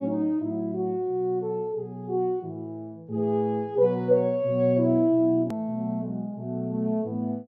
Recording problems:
low-pass filter; nothing above 6.7 kHz
hard cut with a click; at 5.5 s

